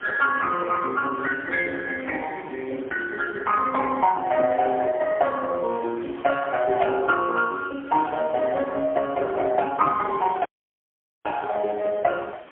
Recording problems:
telephone audio; 300 Hz to 2.2 kHz, AMR-NB, then MP3
wind noise; below 2.1 kHz, SNR 21 dB
dropout; at 10 s for 1 s

